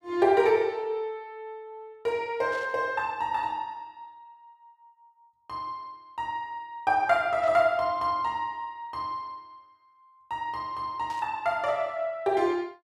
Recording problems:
burst of static; at 2.5 s, at 7.5 s and at 11 s; peak -15 dB vs average level

